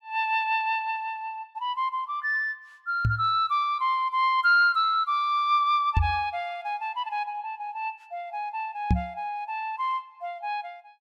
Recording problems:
microphone bump; at 3 s, at 6 s and at 9 s; peak +6 dB vs average level

